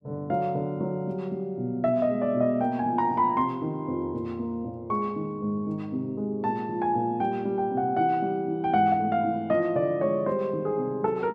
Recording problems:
none

